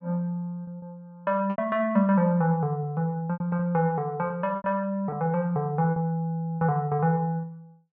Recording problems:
packet loss; 7% of the sound replaced, filled with repeated pitch periods

